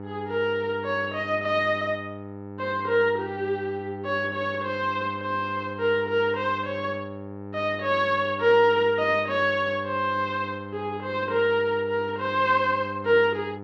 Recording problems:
hum; 50 Hz, harmonics up to 1.7 kHz, SNR 13 dB

